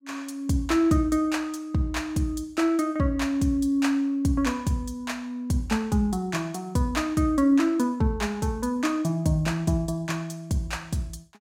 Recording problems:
none

